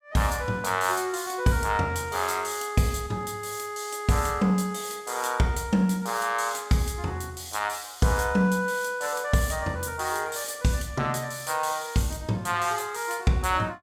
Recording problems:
none

